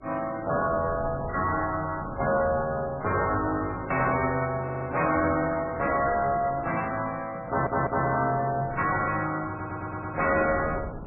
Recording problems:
codec artefacts; AAC, then MP3, log-spectral distance 3 dB, nothing above 2.2 kHz
distorted audio; soft clipping, signal-to-distortion ratio 10 dB
wind on the microphone; below 480 Hz, SNR 15 dB
audio stuttering; at 4.5 s, at 7.5 s and at 9.5 s

